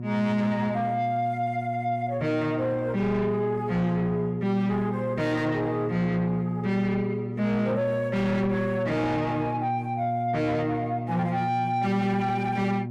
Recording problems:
distorted audio; soft clipping, signal-to-distortion ratio 7 dB
hum; 60 Hz, harmonics up to 720 Hz, SNR 7 dB

